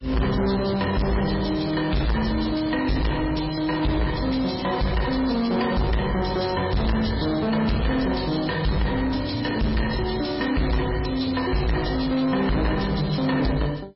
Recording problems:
lossy codec; MP3, log-spectral distance 8 dB, nothing above 5.5 kHz
distorted audio; soft clipping, signal-to-distortion ratio 7 dB

